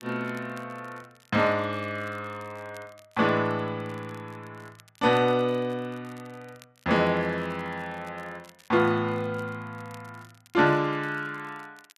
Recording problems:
crackling; vinyl, SNR 29 dB

